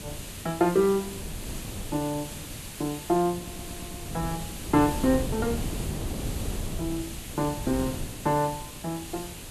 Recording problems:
background hiss; slope 0 dB per octave, SNR 11 dB
wind noise; below 260 Hz, SNR 9 dB
audio stuttering; at 3.5 s

